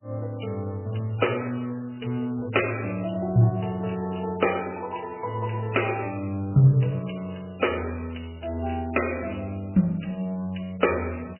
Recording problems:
lossy compression; MP3, log-spectral distance 8 dB, nothing above 2.8 kHz

